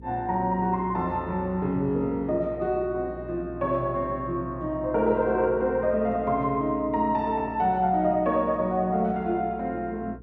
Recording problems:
hum; 60 Hz, harmonics up to 480 Hz, SNR 18 dB

